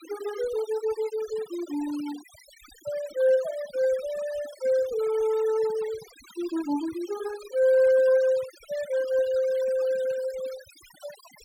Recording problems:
noise reduction artefacts; signal-to-artefact ratio 19 dB

